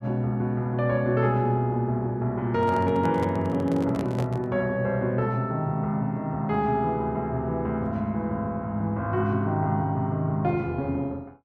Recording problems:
microphone handling noise; from 2.5 to 4.5 s; peak -4 dB vs average level

